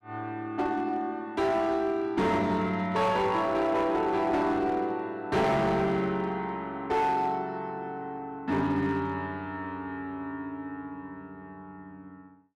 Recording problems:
distortion; hard clipping, uneven, signal-to-distortion ratio 11 dB

